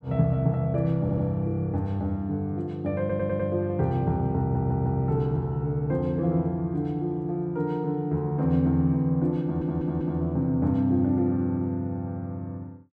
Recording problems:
stutter; 4 times, first at 1 s

